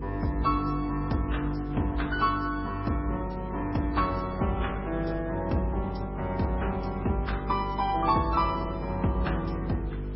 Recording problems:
codec artefacts; AAC, then MP3, log-spectral distance 3 dB, nothing above 4.5 kHz
electrical hum; 50 Hz, harmonics up to 500 Hz, SNR 8 dB
wind on the microphone; below 870 Hz, SNR 20 dB

